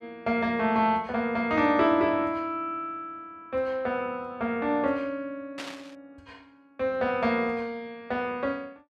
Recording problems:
burst of static; at 5.5 s; peak -6 dB vs average level

